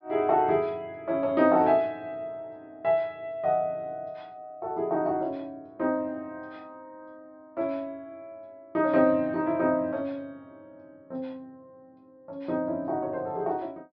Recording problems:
low-pass filter; nothing above 5.5 kHz

